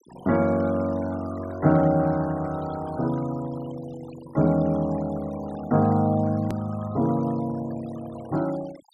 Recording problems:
denoising artefacts; signal-to-artefact ratio 21 dB
hard cut with a click; at 6.5 s

